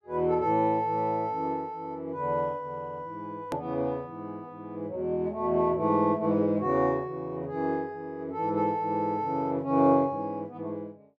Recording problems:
click at an edit; at 3.5 s

